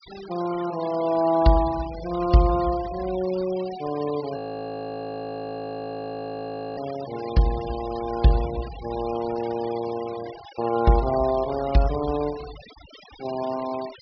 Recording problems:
treble missing; nothing above 5.5 kHz
noise reduction artefacts; signal-to-artefact ratio 16 dB
audio freezing; at 4.5 s for 2.5 s

